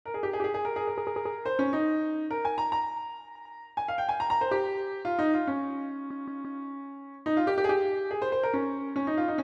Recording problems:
stutter; at 1 s, at 3.5 s and at 6 s

